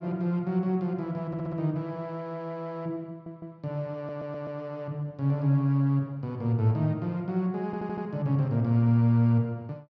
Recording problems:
stutter; 4 times, first at 1.5 s

